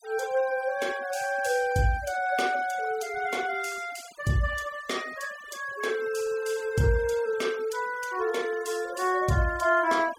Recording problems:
noise reduction artefacts; signal-to-artefact ratio 18 dB

